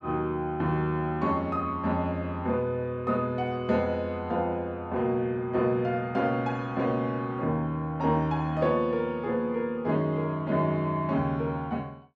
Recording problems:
none

